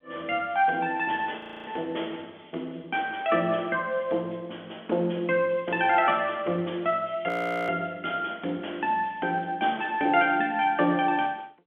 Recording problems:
phone line; 220 Hz to 3.4 kHz, G.711
frozen audio; at 1.5 s and at 7.5 s

